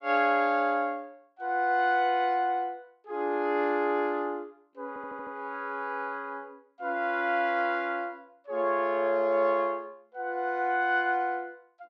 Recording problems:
stutter; at 5 s

